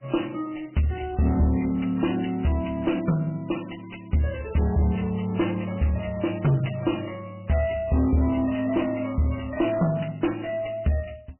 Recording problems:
lossy compression; MP3, log-spectral distance 6 dB, nothing above 3 kHz
distortion; soft clipping, signal-to-distortion ratio 9 dB

